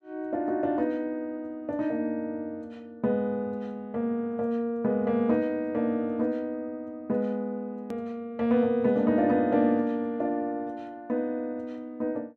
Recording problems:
click at an edit; at 8 s

